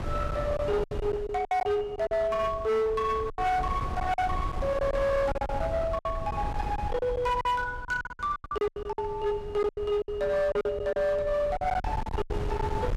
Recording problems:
distortion; hard clipping, signal-to-distortion ratio 10 dB
wind noise; below 370 Hz, SNR 8 dB
packet loss; 13% of the sound replaced, filled with silence

